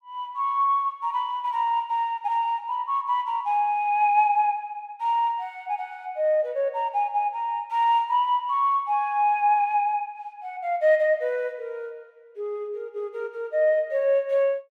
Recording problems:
none

